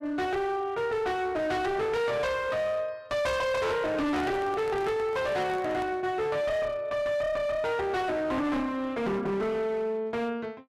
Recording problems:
distortion; hard clipping, uneven, signal-to-distortion ratio 7 dB
handling noise; from 4 to 6 s; peak -8 dB vs average level

